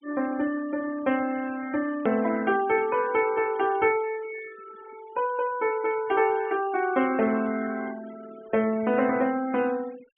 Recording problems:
low-pass filter; nothing above 3.5 kHz
noise reduction artefacts; signal-to-artefact ratio 20 dB
click at an edit; at 2 s

